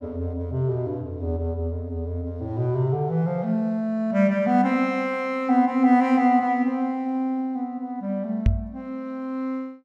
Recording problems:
microphone bump; at 8.5 s; peak +6 dB vs average level

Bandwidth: 14 kHz